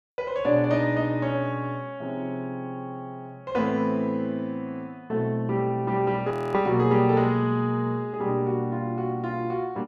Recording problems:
frozen audio; at 6.5 s

